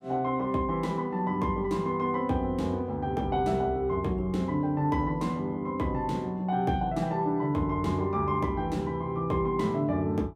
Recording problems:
none

